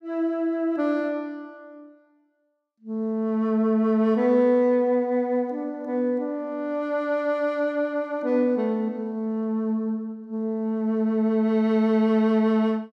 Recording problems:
none

